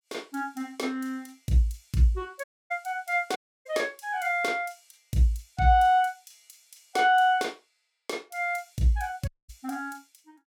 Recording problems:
audio cutting out; at 2.5 s, at 3.5 s and at 9.5 s

